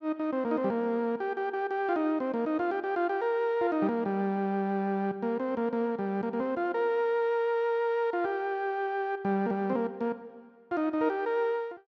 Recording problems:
none

